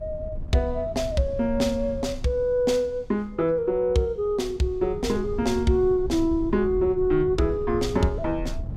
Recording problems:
wind on the microphone; below 92 Hz, SNR 13 dB

